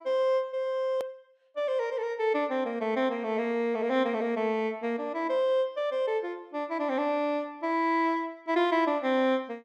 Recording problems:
edit click; at 1 s

